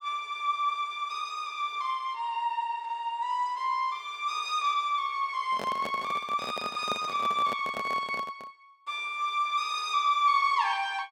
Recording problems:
microphone handling noise; from 5.5 to 8.5 s; peak -2 dB vs average level

